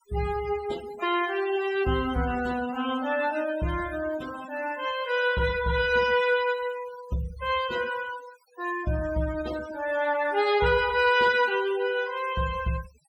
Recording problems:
denoising artefacts; signal-to-artefact ratio 16 dB

